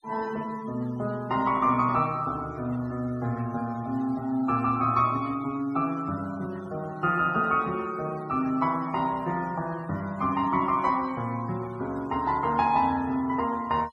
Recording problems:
noise reduction artefacts; signal-to-artefact ratio 22 dB

